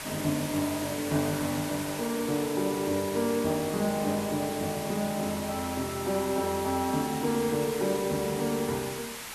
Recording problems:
background hiss; SNR 8 dB

